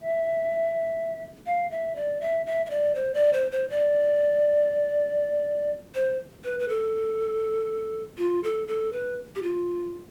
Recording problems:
background hiss; SNR 25 dB

